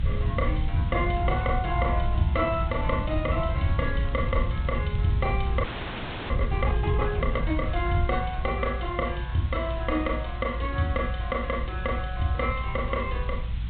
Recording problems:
treble missing; nothing above 4 kHz
hiss; SNR 18 dB
rumble; below 98 Hz, SNR 1 dB
crackling; from 3.5 to 6.5 s; loose cable, SNR 27 dB
frozen audio; at 5.5 s for 0.5 s

